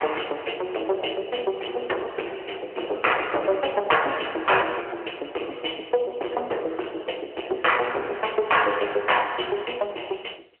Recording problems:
telephone audio; 300 Hz to 3.1 kHz, AMR-NB
distorted audio; soft clipping, signal-to-distortion ratio 7 dB

